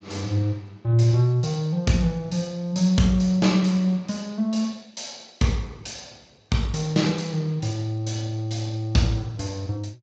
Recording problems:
codec artefacts; Speex, log-spectral distance 4 dB

